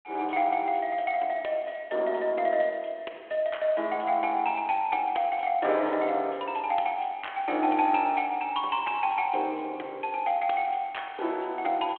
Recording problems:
telephone audio; 280 Hz to 3.5 kHz, G.726

